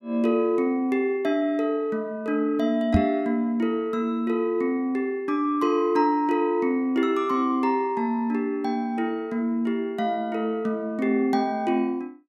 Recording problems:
microphone thump; at 3 s; peak +7 dB vs average level

